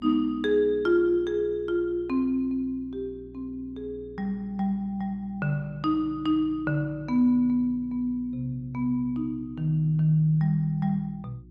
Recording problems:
hum; 60 Hz, harmonics up to 360 Hz, SNR 23 dB

